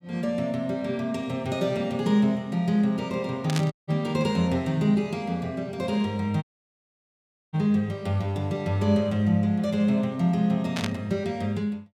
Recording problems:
burst of static; at 3.5 s and at 11 s; peak -1 dB vs average level
audio cutting out; at 3.5 s and at 6.5 s for 1 s

